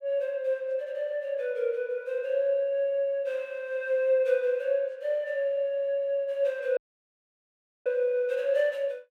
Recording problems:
dropout; at 7 s for 1 s

